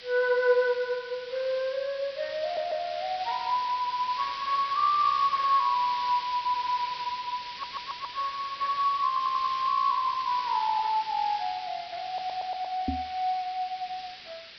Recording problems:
low-pass filter; nothing above 5.5 kHz
hiss; SNR 12 dB
audio stuttering; 4 times, first at 2.5 s
microphone thump; at 13 s; peak +2 dB vs average level

